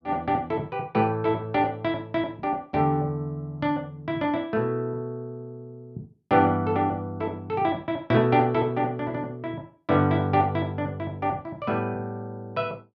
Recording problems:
none

